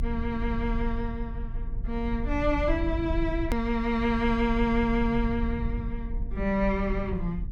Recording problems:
low-frequency rumble; below 64 Hz, strongest tone 26 Hz, SNR 6 dB
hard cut with a click; at 3.5 s

